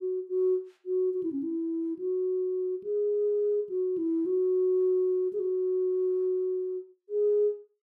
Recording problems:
none

